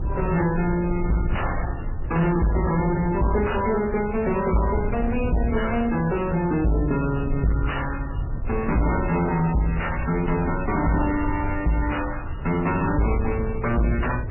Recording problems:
codec artefacts; MP3, then AAC, log-spectral distance 4 dB, nothing above 2.9 kHz
distorted audio; soft clipping, signal-to-distortion ratio 6 dB
low-frequency rumble; below 110 Hz, SNR 8 dB

